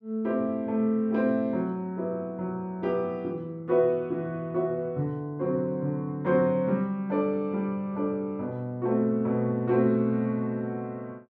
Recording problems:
none

